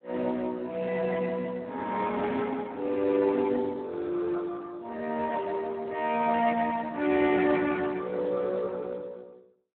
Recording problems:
telephone audio; 240 Hz to 2.9 kHz, Speex

